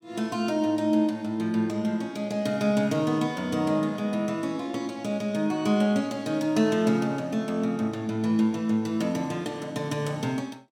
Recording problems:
none

